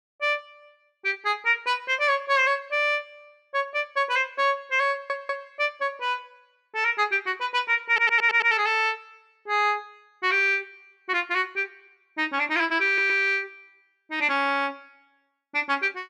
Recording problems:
audio stuttering; at 5 s, at 8 s and at 13 s

